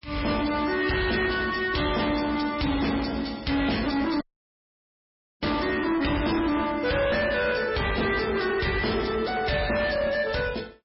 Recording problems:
codec artefacts; MP3, log-spectral distance 6 dB, nothing above 5.3 kHz
distorted audio; soft clipping, signal-to-distortion ratio 7 dB
audio cutting out; at 4 s for 1 s

